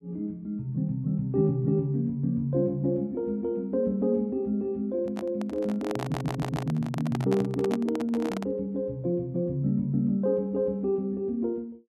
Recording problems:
microphone handling noise; from 5 to 8.5 s; peak -1 dB vs average level
stutter; at 6 s

